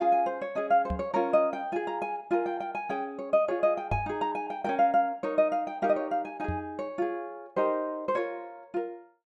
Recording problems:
knock on the microphone; at 1 s, at 4 s and at 6.5 s; peak -1 dB vs average level

